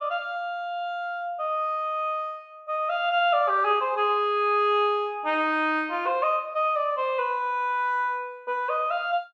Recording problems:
none

